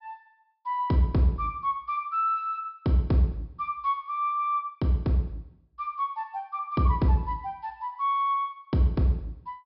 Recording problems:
treble missing; nothing above 5.2 kHz

